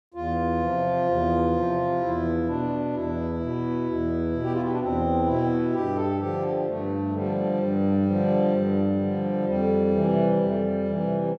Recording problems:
none

